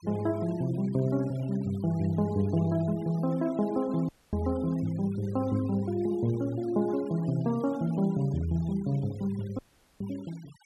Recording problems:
noise reduction artefacts; signal-to-artefact ratio 22 dB
audio cutting out; at 4 s and at 9.5 s

